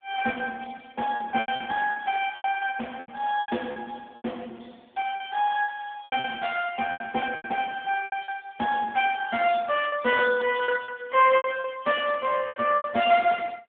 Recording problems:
telephone audio; 190 Hz to 3.4 kHz, AMR-NB
lost packets; 11% of the sound replaced, filled with repeated pitch periods

